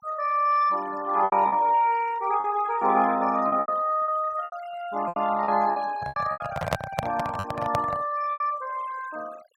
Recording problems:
noise reduction artefacts; signal-to-artefact ratio 21 dB
packet loss; 9% of the sound replaced, filled with repeated pitch periods
microphone handling noise; from 6 to 8 s; peak +4 dB vs average level

